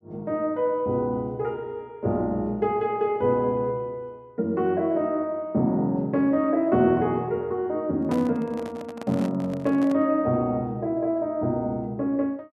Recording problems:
handling noise; from 8 to 10 s; peak -6 dB vs average level

